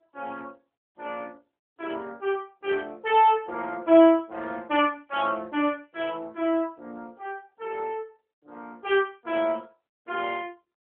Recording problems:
phone line; 240 Hz to 3.5 kHz, AMR-NB

